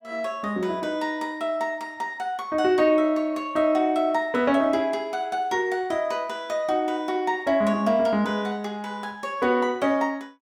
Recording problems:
none

